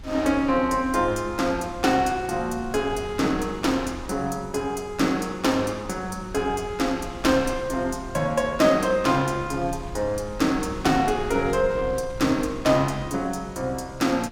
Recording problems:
wind on the microphone; below 140 Hz, SNR 16 dB

